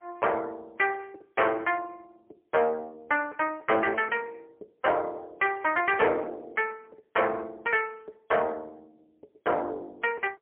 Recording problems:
telephone audio; 260 Hz to 3.1 kHz, AMR-NB, then MP3
distortion; soft clipping, signal-to-distortion ratio 12 dB

